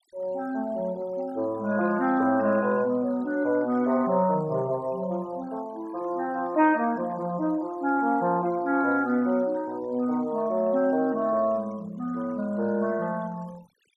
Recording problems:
denoising artefacts; signal-to-artefact ratio 24 dB

